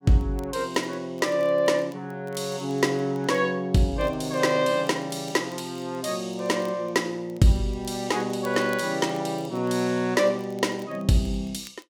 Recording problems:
crackle; vinyl, SNR 29 dB

